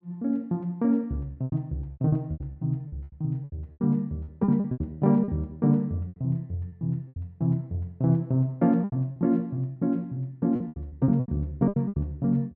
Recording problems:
lost packets; 13% of the sound replaced, filled with repeated pitch periods

